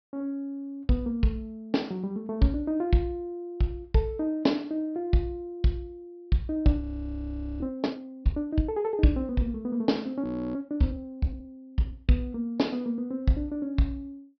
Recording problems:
low-pass filter; nothing above 5.5 kHz
frozen audio; at 7 s for 1 s and at 10 s

